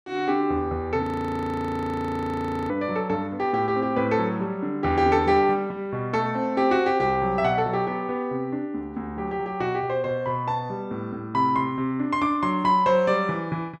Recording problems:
audio freezing; at 1 s for 1.5 s

